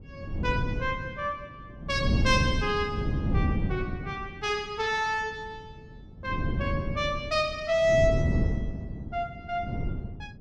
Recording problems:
wind noise; below 200 Hz, SNR 2 dB

